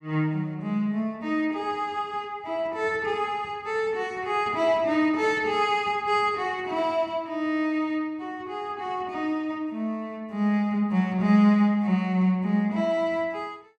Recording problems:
none

